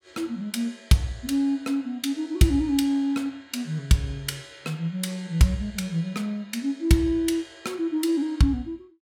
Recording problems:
none

